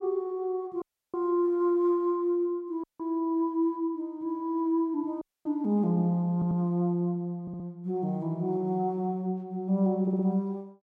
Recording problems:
audio cutting out; at 1 s, at 3 s and at 5 s
audio stuttering; at 6.5 s, at 7.5 s and at 10 s

